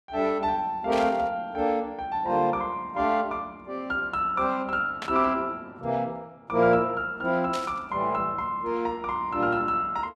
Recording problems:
burst of static; at 1 s, at 5 s and at 7.5 s; peak -4 dB vs average level

